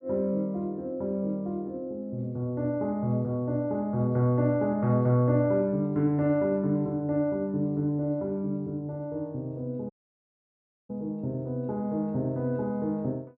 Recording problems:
dropout; at 10 s for 1 s

